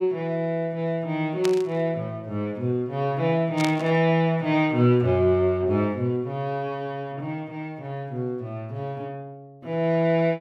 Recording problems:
burst of static; at 1.5 s and at 3.5 s; peak -1 dB vs average level

